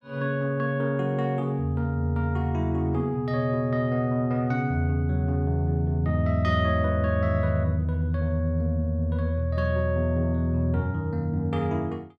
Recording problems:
none

